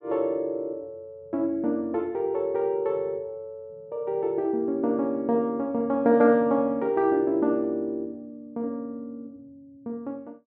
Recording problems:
none

